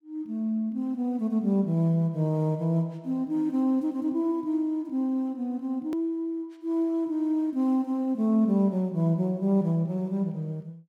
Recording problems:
edit click; at 6 s

